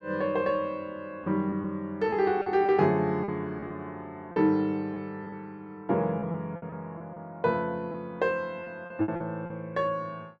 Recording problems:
lost packets; 7% of the sound replaced, filled with repeated pitch periods

